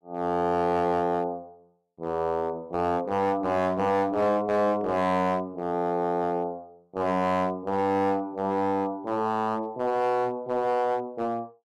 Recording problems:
distortion; hard clipping, uneven, signal-to-distortion ratio 10 dB

